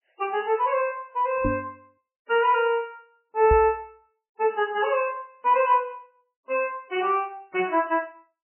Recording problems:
lossy codec; MP3, log-spectral distance 2 dB, nothing above 2.4 kHz
knock on the microphone; at 1.5 s and at 3.5 s; peak +1 dB vs average level

